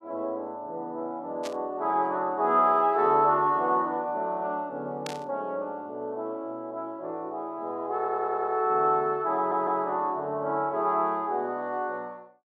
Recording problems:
static burst; at 1.5 s and at 5 s; peak -5 dB vs average level
audio stuttering; at 8 s and at 9.5 s

